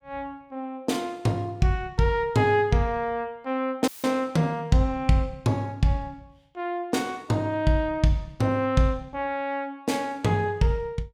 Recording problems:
dropout; at 4 s; filled with static

